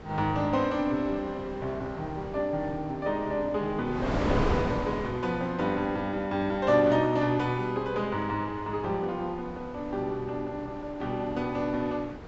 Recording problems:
low-pass filter; nothing above 7.7 kHz
wind on the microphone; below 740 Hz, SNR 9 dB

